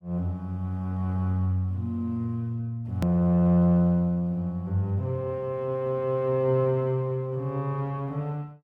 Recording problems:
click at an edit; at 3 s

